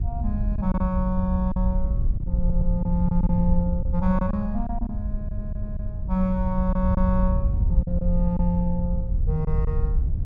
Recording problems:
wind noise; below 74 Hz, SNR 0 dB
lost packets; 5% of the sound replaced, filled with silence
stutter; at 2.5 s and at 5 s

